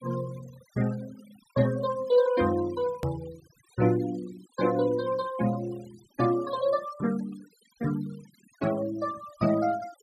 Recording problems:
noise reduction artefacts; signal-to-artefact ratio 21 dB
click at an edit; at 3 s

